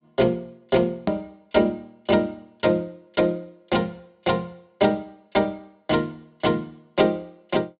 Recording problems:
treble missing; nothing above 4.6 kHz
hard cut with a click; at 1 s

